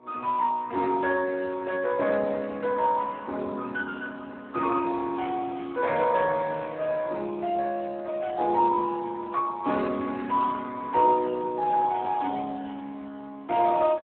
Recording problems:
phone line; 240 Hz to 2.1 kHz, Speex

